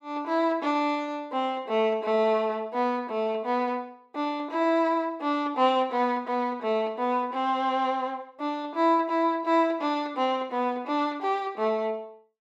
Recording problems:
none

